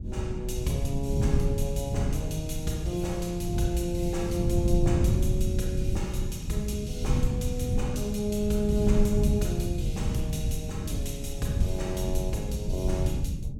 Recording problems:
rumble; below 140 Hz, SNR -1 dB

